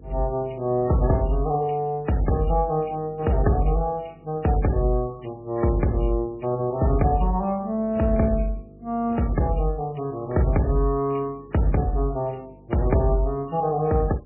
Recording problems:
codec artefacts; MP3, log-spectral distance 2 dB, nothing above 2.8 kHz
electrical hum; 50 Hz, harmonics up to 500 Hz, SNR 24 dB

